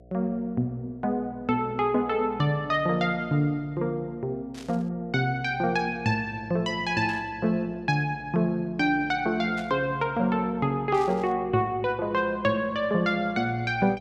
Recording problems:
hum; 60 Hz, harmonics up to 720 Hz, SNR 24 dB
static burst; 4 times, first at 4.5 s; peak -12 dB vs average level

